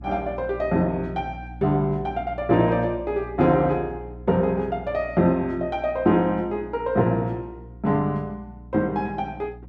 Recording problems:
hum; 60 Hz, harmonics up to 300 Hz, SNR 17 dB

